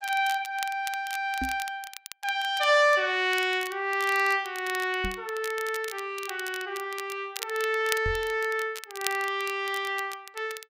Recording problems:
crackle; vinyl, SNR 13 dB
microphone bump; at 1.5 s, at 5 s and at 8 s; peak -3 dB vs average level

